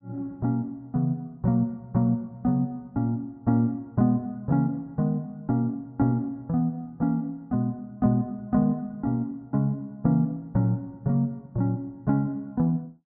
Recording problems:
treble cut off; nothing above 5.7 kHz

